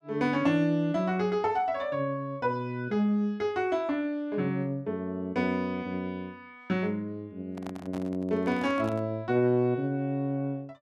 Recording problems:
handling noise; from 7.5 to 9 s; peak -8 dB vs average level

